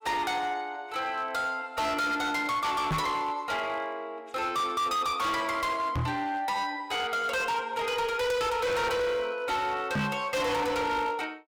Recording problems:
distortion; hard clipping, signal-to-distortion ratio 7 dB
microphone thump; at 3 s, at 6 s and at 10 s; peak +3 dB vs average level

